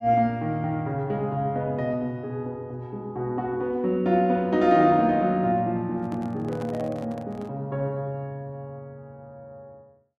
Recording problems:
handling noise; from 6 to 7.5 s; peak -11 dB vs average level

